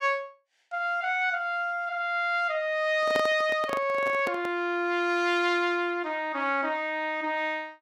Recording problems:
handling noise; from 3 to 4.5 s; peak -1 dB vs average level

